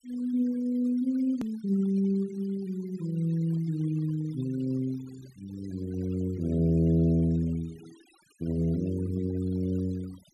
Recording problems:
denoising artefacts; signal-to-artefact ratio 24 dB
hard cut with a click; at 1.5 s

